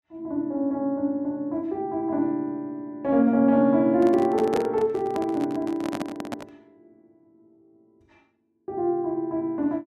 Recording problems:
microphone handling noise; from 4 to 6.5 s; peak -3 dB vs average level

